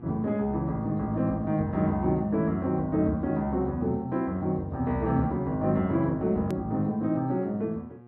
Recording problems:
hum; 60 Hz, harmonics up to 1.6 kHz, SNR 22 dB
hard cut with a click; at 6.5 s

